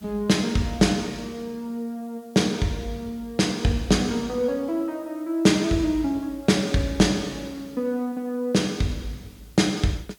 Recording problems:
background hiss; SNR 30 dB

